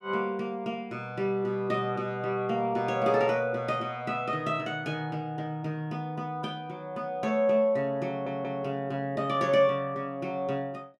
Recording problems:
audio stuttering; at 8 s

